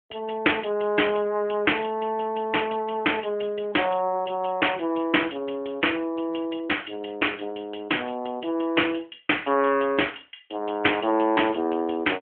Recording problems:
telephone audio; 240 Hz to 3.3 kHz, AMR-NB

